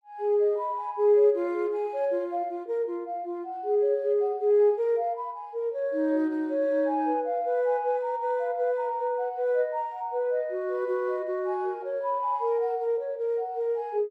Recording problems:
none

